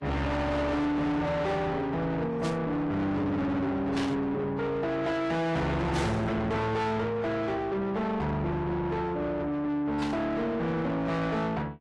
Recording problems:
codec artefacts; AAC, log-spectral distance 2 dB, nothing above 11 kHz
distorted audio; soft clipping, signal-to-distortion ratio 6 dB
burst of static; 4 times, first at 2.5 s; peak -4 dB vs average level

